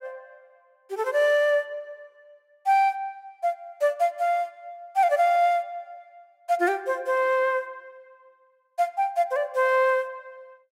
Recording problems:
none

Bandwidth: 16 kHz